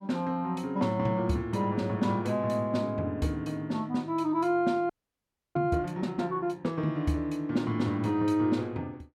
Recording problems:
frozen audio; at 5 s for 0.5 s

